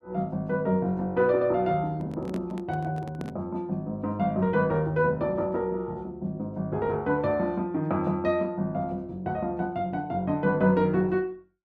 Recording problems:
microphone handling noise; from 2 to 3.5 s; peak -8 dB vs average level

